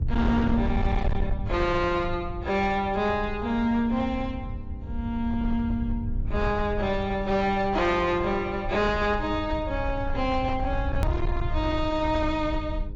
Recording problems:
lossy compression; AAC, log-spectral distance 2 dB
distorted audio; hard clipping, signal-to-distortion ratio 12 dB
electrical hum; 50 Hz, harmonics up to 1 kHz, SNR 18 dB
rumble; below 94 Hz, SNR 6 dB
edit click; at 11 s

